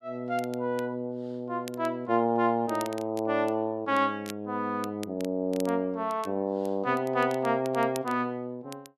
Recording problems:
crackling; vinyl, SNR 20 dB

